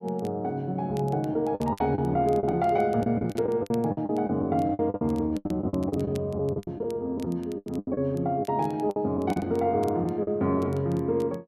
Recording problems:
crackling; vinyl, SNR 27 dB
packet loss; 13% of the sound replaced, filled with the last packet

